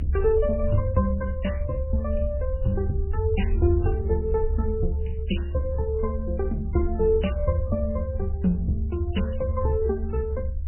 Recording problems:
lossy codec; MP3, log-spectral distance 2 dB, nothing above 3 kHz
rumble; below 74 Hz, strongest tone 72 Hz, SNR 3 dB

